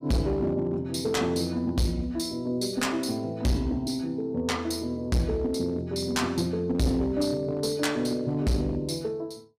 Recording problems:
distortion; hard clipping, uneven, signal-to-distortion ratio 6 dB

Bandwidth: 15.5 kHz